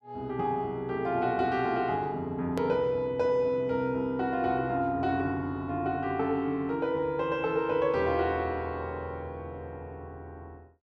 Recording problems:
edit click; at 2.5 s

